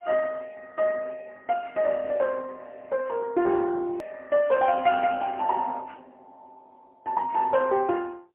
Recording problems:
phone line; 220 Hz to 3.2 kHz, AMR-NB, then MP3
hard cut with a click; at 4 s

